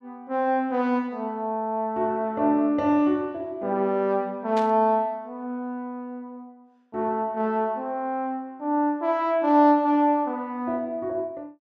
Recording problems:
burst of static; at 4.5 s; peak -9 dB vs average level

